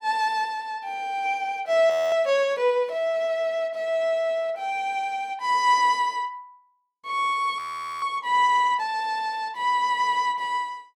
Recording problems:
frozen audio; at 2 s and at 7.5 s

